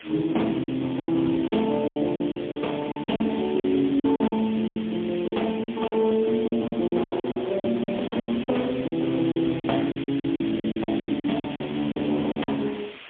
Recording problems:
phone line; 130 Hz to 3.4 kHz, AMR-NB, then MP3
background hiss; SNR 15 dB
packet loss; 16% of the sound replaced, filled with silence

